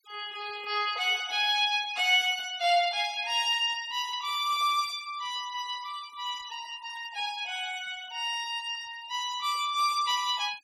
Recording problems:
denoising artefacts; signal-to-artefact ratio 20 dB

